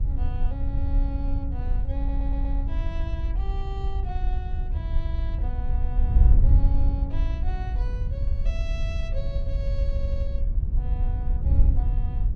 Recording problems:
wind on the microphone; below 68 Hz, SNR -14 dB
stutter; at 2 s and at 10 s

